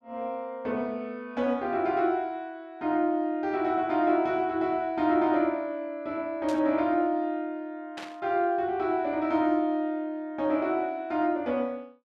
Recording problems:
static burst; at 6.5 s and at 8 s; peak -8 dB vs average level

